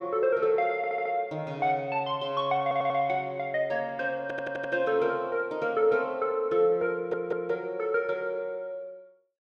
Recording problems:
audio stuttering; 4 times, first at 1 s

